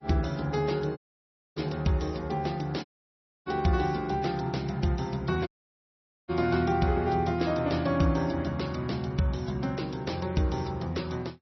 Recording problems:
lossy compression; MP3, log-spectral distance 5 dB, nothing above 5.8 kHz
audio cutting out; at 1 s for 0.5 s, at 3 s for 0.5 s and at 5.5 s for 1 s

